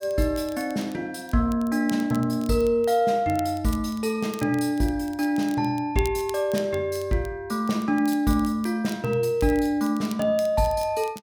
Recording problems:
crackle; vinyl, SNR 21 dB

